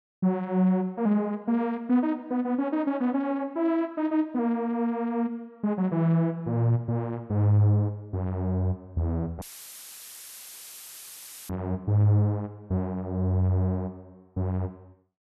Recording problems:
dropout; at 9.5 s for 2 s; filled with static

